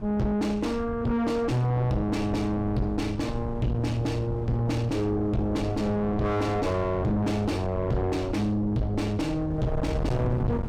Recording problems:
distortion; soft clipping, signal-to-distortion ratio 6 dB
wind noise; below 200 Hz, SNR 8 dB

